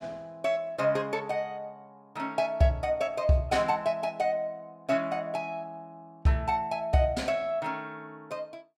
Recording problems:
none

